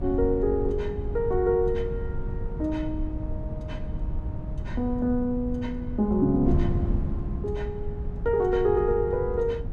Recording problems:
wind noise; below 110 Hz, SNR 6 dB

